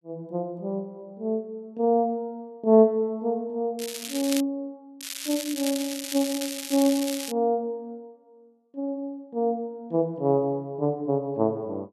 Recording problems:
crackling; at 4 s and from 5 to 7.5 s; loose cable, SNR 7 dB

